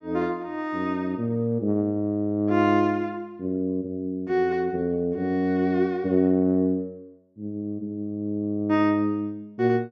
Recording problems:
none

